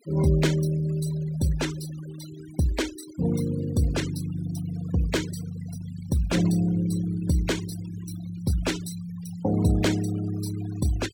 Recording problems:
denoising artefacts; signal-to-artefact ratio 15 dB

